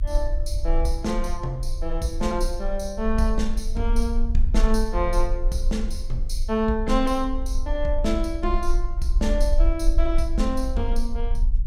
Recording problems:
rumble; below 44 Hz, strongest tone 26 Hz, SNR 0 dB

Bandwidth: 16 kHz